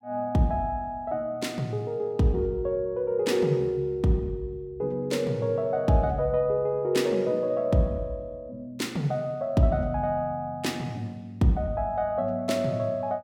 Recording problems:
none

